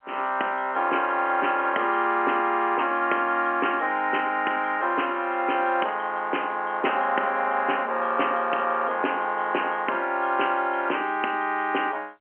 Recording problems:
phone line; 260 Hz to 3.1 kHz, G.711

